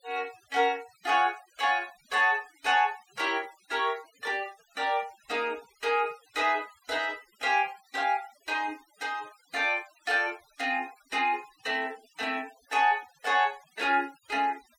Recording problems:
noise reduction artefacts; signal-to-artefact ratio 23 dB

